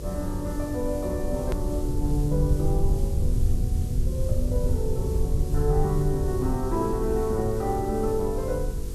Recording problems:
hum; 50 Hz, harmonics up to 500 Hz, SNR 14 dB
hiss; SNR 16 dB
low-frequency rumble; below 84 Hz, SNR 1 dB
click at an edit; at 1.5 s

